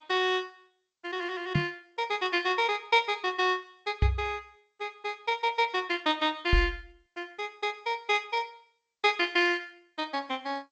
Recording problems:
codec artefacts; MP2, then G.722, log-spectral distance 4 dB, nothing above 7.3 kHz
knock on the microphone; at 1.5 s, at 4 s and at 6.5 s; peak +7 dB vs average level

